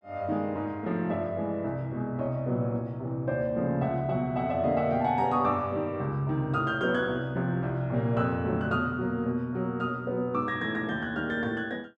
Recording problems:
none

